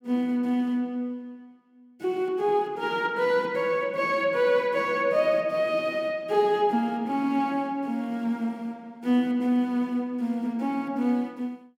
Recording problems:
none

